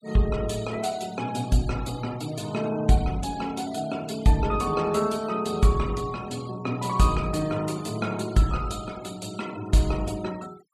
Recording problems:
noise reduction artefacts; signal-to-artefact ratio 19 dB

